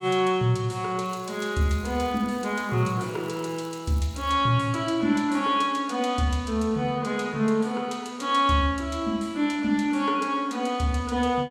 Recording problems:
crackling; from 1 to 4.5 s; loose cable, SNR 27 dB

